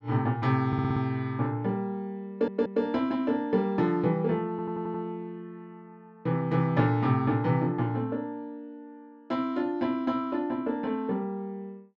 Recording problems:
stutter; at 0.5 s, at 2.5 s and at 4.5 s

